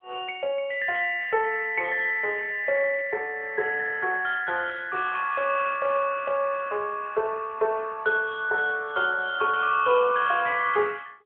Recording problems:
phone line; 370 Hz to 3.6 kHz, AMR-NB

